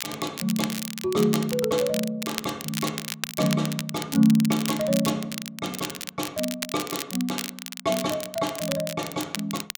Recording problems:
crackling; vinyl, SNR 7 dB

